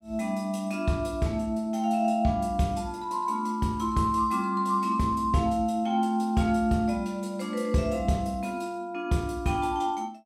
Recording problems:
none

